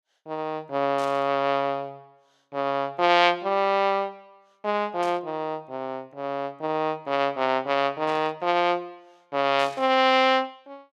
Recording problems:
burst of static; 4 times, first at 1 s; peak -12 dB vs average level

